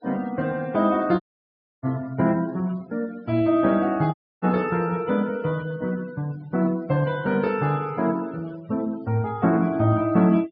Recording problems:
low-pass filter; nothing above 5.5 kHz
noise reduction artefacts; signal-to-artefact ratio 24 dB
dropout; at 1 s for 0.5 s and at 4 s

